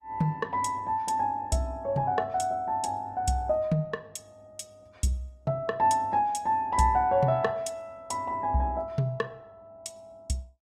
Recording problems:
codec artefacts; Opus, log-spectral distance 2 dB, nothing above 15.5 kHz

